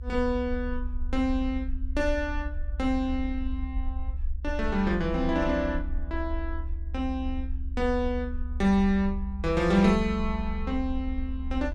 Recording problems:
low-frequency rumble; below 68 Hz, strongest tone 22 Hz, SNR 6 dB

